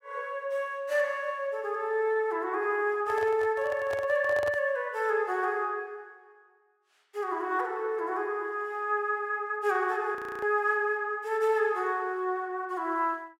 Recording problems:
microphone handling noise; from 3 to 4.5 s; peak -6 dB vs average level
audio freezing; at 10 s

